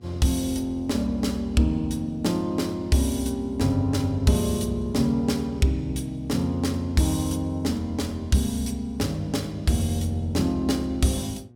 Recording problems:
mains hum; 60 Hz, harmonics up to 720 Hz, SNR 26 dB

